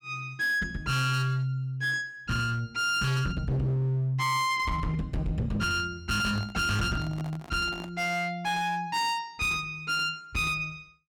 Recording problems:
distorted audio; hard clipping, signal-to-distortion ratio 7 dB
microphone handling noise; from 6 to 8 s; peak -10 dB vs average level

